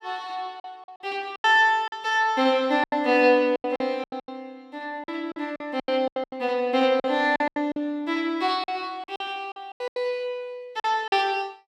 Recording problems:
lost packets; 13% of the sound replaced, filled with silence

